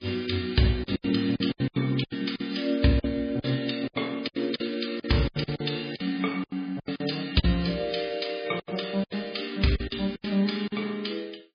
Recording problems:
lossy codec; MP3, log-spectral distance 6 dB
packet loss; 14% of the sound replaced, filled with silence

